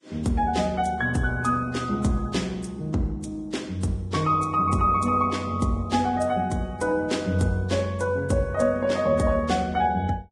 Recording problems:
lossy codec; Vorbis, log-spectral distance 2 dB

